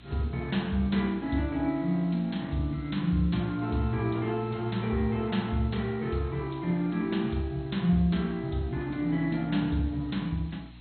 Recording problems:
codec artefacts; MP2, log-spectral distance 4 dB, nothing above 4.2 kHz
hum; 60 Hz, harmonics up to 300 Hz, SNR 23 dB
background hiss; SNR 27 dB

